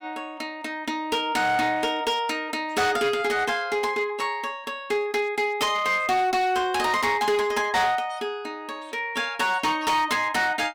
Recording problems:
distortion; hard clipping, uneven, signal-to-distortion ratio 10 dB

